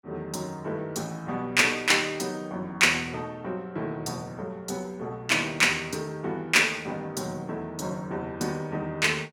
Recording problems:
none

